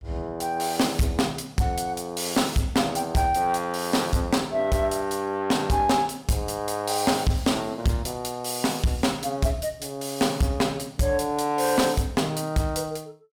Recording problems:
distorted audio; soft clipping, signal-to-distortion ratio 11 dB

